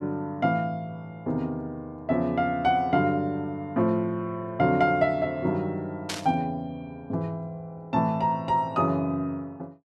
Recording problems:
static burst; at 6 s; peak 0 dB vs average level

